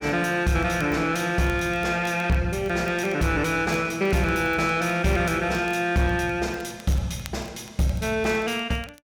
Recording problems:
distortion; soft clipping, signal-to-distortion ratio 11 dB
crackle; vinyl, SNR 24 dB

